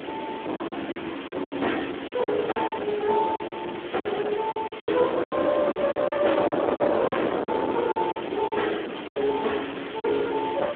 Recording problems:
phone line; 240 Hz to 3.5 kHz, Speex
distorted audio; hard clipping, signal-to-distortion ratio 7 dB
hiss; SNR 12 dB
wind on the microphone; below 690 Hz, SNR 6 dB
packet loss; 12% of the sound replaced, filled with silence

